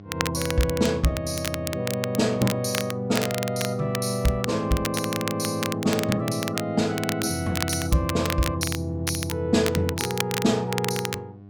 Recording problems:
electrical hum; 50 Hz, harmonics up to 800 Hz, SNR 18 dB
crackle; vinyl, SNR 7 dB

